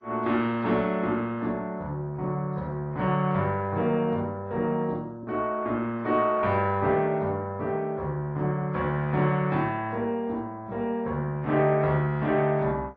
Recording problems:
codec artefacts; MP2, then AAC, log-spectral distance 2 dB

